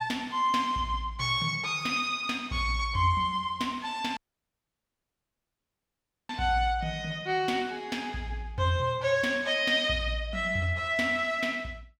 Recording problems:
audio cutting out; at 4 s for 2 s

